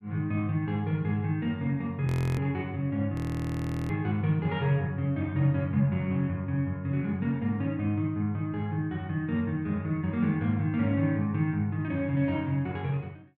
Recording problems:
frozen audio; at 2 s and at 3 s for 0.5 s

